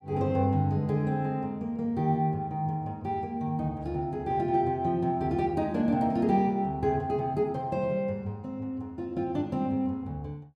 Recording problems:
none

